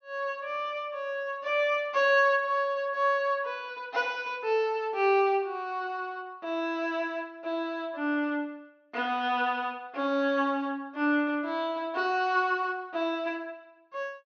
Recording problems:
low-pass filter; nothing above 6.5 kHz

